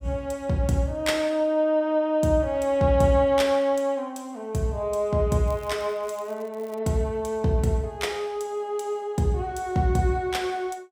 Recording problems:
crackle; from 5.5 to 7 s; loose cable, SNR 28 dB

